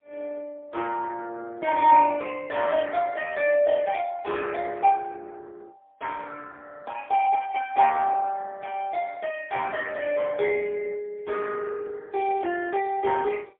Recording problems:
phone line; 300 Hz to 3.1 kHz, AMR-NB, then MP3

